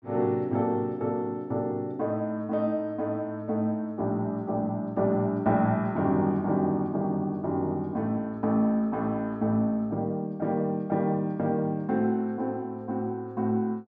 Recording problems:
none

